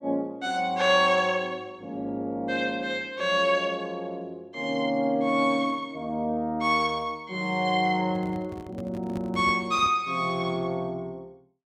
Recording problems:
microphone handling noise; from 8 to 10 s; peak -8 dB vs average level

